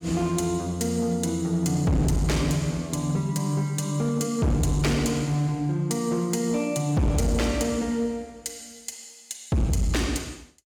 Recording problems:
distortion; hard clipping, signal-to-distortion ratio 8 dB

